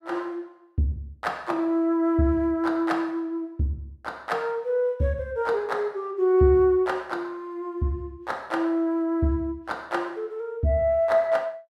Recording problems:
none

